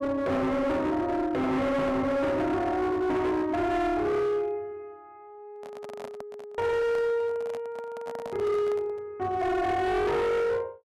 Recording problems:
distorted audio; hard clipping, signal-to-distortion ratio 8 dB
microphone handling noise; from 5.5 to 9 s; peak -8 dB vs average level

